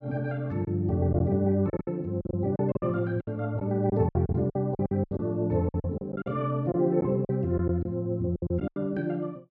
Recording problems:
packet loss; 13% of the sound replaced, filled with silence

